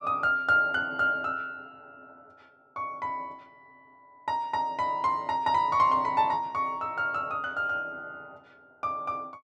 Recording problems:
none

